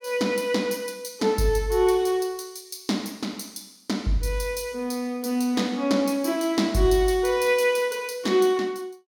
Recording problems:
none

